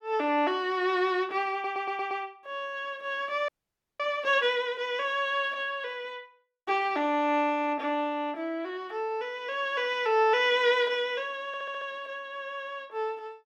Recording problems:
stutter; at 1.5 s and at 11 s
audio freezing; at 3.5 s for 0.5 s

